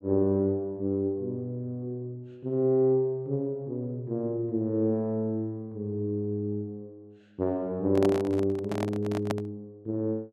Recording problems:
handling noise; from 8 to 9.5 s; peak +2 dB vs average level

